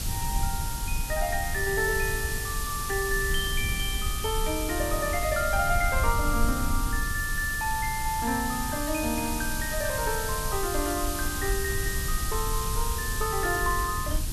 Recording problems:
background hiss; slope +1 dB per octave, SNR 4 dB
low-frequency rumble; below 80 Hz, SNR 5 dB

